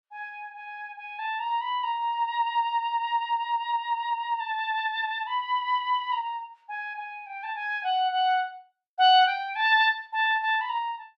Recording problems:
none

